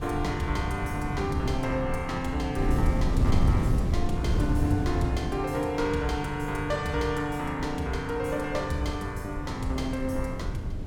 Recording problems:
wind on the microphone; below 150 Hz, SNR 1 dB

